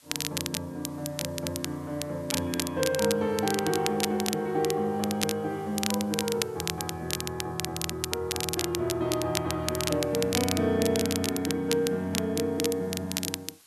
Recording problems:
hiss; slope +1 dB per octave, SNR 26 dB
crackling; vinyl, SNR 4 dB

